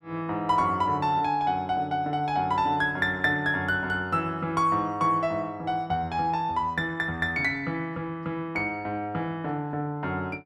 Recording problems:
none

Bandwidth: 13.5 kHz